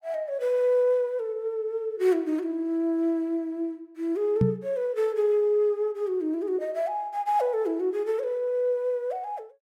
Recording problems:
microphone bump; at 4.5 s; peak +7 dB vs average level

